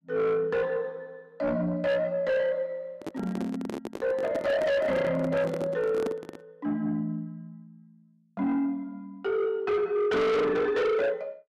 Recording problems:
distorted audio; soft clipping, signal-to-distortion ratio 6 dB
handling noise; from 3 to 6.5 s; peak -1 dB vs average level

